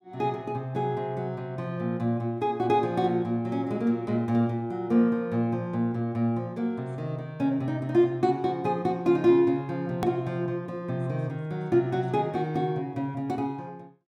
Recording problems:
edit click; at 10 s

